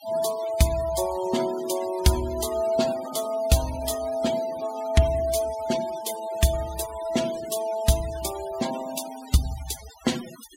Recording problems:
noise reduction artefacts; signal-to-artefact ratio 13 dB

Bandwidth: 16 kHz